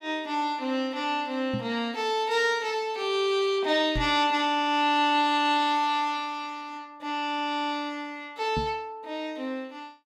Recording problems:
knock on the microphone; at 1.5 s, at 4 s and at 8.5 s; peak -2 dB vs average level

